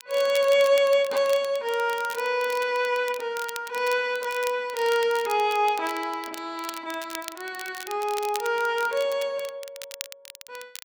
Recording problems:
crackling; vinyl, SNR 15 dB

